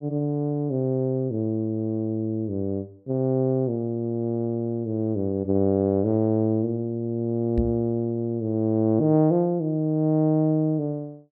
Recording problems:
knock on the microphone; at 7.5 s; peak +2 dB vs average level

